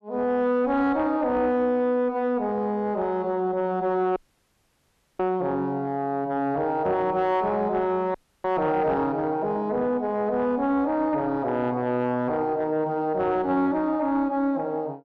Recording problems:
distortion; soft clipping, signal-to-distortion ratio 11 dB
dropout; at 4 s for 1 s and at 8 s

